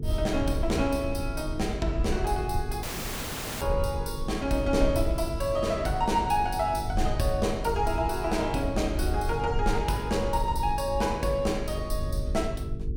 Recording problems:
electrical hum; 50 Hz, harmonics up to 450 Hz, SNR 12 dB
rumble; below 80 Hz, SNR 6 dB
audio cutting out; at 3 s for 1 s

